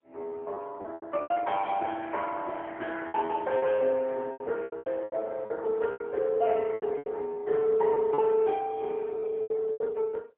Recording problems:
phone line; 320 Hz to 2.3 kHz, AMR-NB, then MP3
packet loss; 12% of the sound replaced, filled with repeated pitch periods

